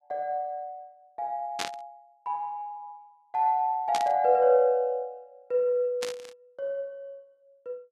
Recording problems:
static burst; at 1.5 s, at 4 s and at 6 s; peak 0 dB vs average level

